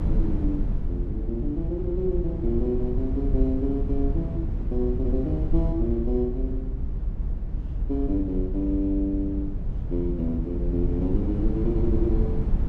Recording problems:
low-frequency rumble; below 86 Hz, SNR 0 dB

